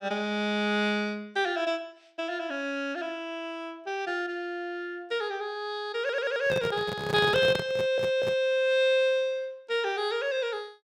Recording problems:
stutter; at 6 s and at 7.5 s
microphone handling noise; from 6 to 8.5 s; peak -1 dB vs average level

